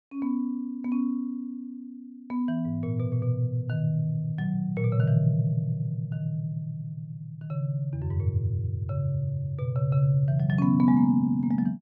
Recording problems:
none

